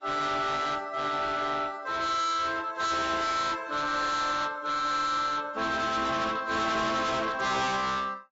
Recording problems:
lossy codec; AAC, log-spectral distance 3 dB, nothing above 7.6 kHz
distortion; soft clipping, signal-to-distortion ratio 6 dB

